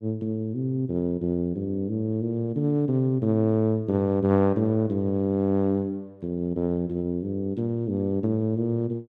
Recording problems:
none

